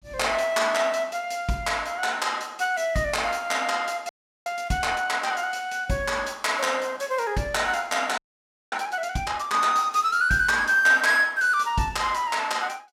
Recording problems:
audio freezing; at 4 s and at 8 s for 0.5 s

